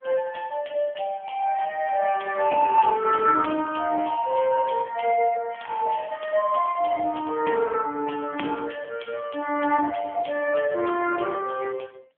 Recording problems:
phone line; 240 Hz to 2.9 kHz, AMR-NB
crackle; from 2 to 4.5 s and from 5.5 to 7 s; loose cable, SNR 23 dB

